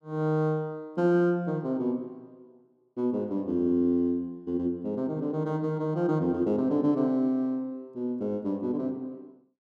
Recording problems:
none

